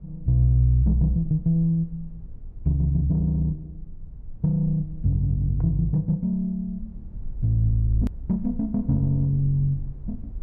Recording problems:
rumble; below 58 Hz, strongest tone 18 Hz, SNR 17 dB
click at an edit; at 8 s

